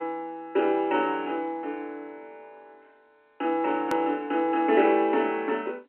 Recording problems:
phone line; 240 Hz to 3.3 kHz, G.711
hard cut with a click; at 4 s

